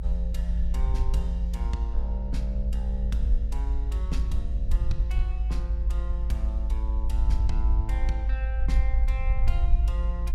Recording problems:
rumble; below 54 Hz, strongest tone 52 Hz, SNR -11 dB

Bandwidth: 16 kHz